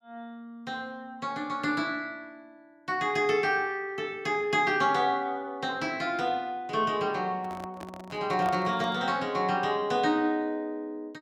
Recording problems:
microphone handling noise; from 7.5 to 9 s; peak -7 dB vs average level

